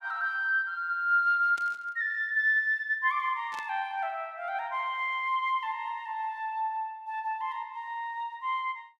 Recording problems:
burst of static; at 1.5 s and at 3.5 s; peak -12 dB vs average level

